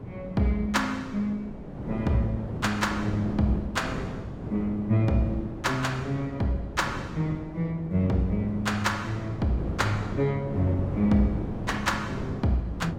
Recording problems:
wind on the microphone; below 360 Hz, SNR 8 dB

